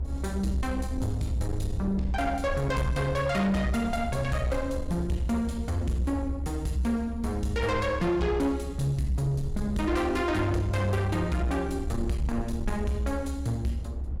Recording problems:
distorted audio; soft clipping, signal-to-distortion ratio 11 dB
rumble; below 74 Hz, SNR 7 dB
wind on the microphone; below 270 Hz, SNR 17 dB

